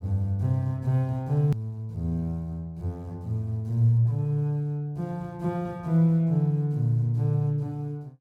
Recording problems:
click at an edit; at 1.5 s

